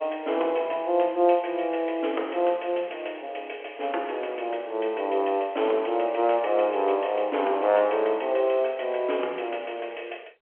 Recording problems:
telephone audio; 300 Hz to 3.2 kHz, G.711

